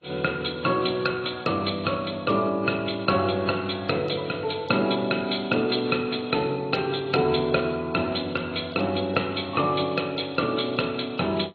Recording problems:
lossy codec; MP2, then AAC, log-spectral distance 8 dB, nothing above 4.2 kHz

